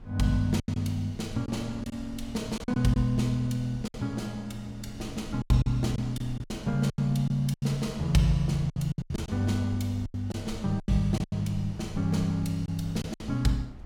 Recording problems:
wind on the microphone; below 100 Hz, SNR 17 dB
packet loss; 10% of the sound replaced, filled with silence

